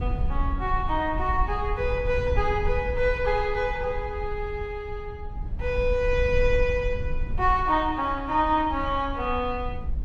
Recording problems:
low-frequency rumble; below 68 Hz, SNR 7 dB

